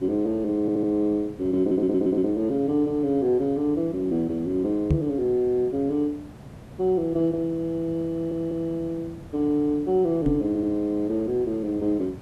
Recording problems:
background hiss; slope -7 dB per octave, SNR 19 dB
stutter; 4 times, first at 0.5 s
microphone bump; at 5 s and at 10 s; peak +5 dB vs average level

